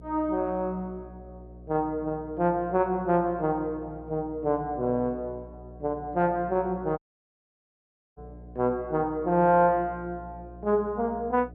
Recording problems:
hum; 60 Hz, harmonics up to 720 Hz, SNR 19 dB
dropout; at 7 s for 1 s

